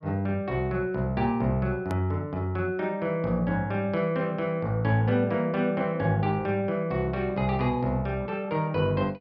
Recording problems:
hard cut with a click; at 2 s

